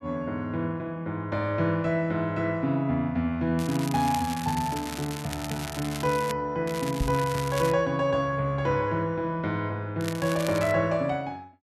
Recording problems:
crackle; from 3.5 to 6.5 s, from 6.5 to 7.5 s and at 10 s; loose cable, SNR 11 dB
knock on the microphone; at 7 s; peak +2 dB vs average level

